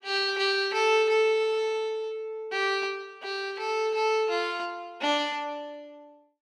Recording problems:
none

